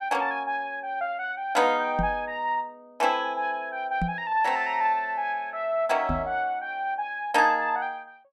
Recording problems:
microphone bump; at 2 s, at 4 s and at 6 s; peak +1 dB vs average level

